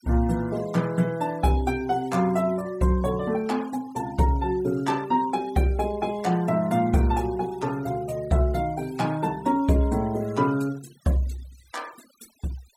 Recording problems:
denoising artefacts; signal-to-artefact ratio 22 dB

